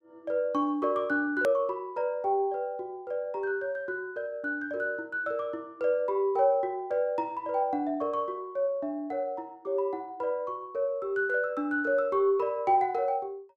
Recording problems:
click at an edit; at 1.5 s

